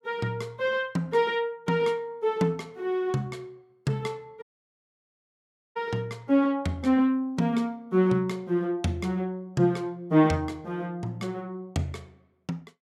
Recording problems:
dropout; at 4.5 s for 1.5 s

